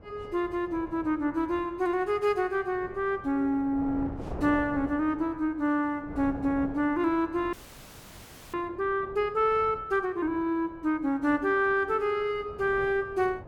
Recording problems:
wind noise; below 550 Hz, SNR 17 dB
audio freezing; at 7.5 s for 1 s

